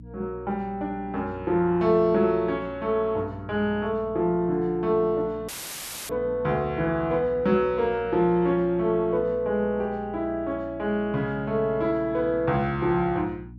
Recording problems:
electrical hum; 60 Hz, harmonics up to 300 Hz, SNR 19 dB
dropout; at 5.5 s for 0.5 s; filled with static

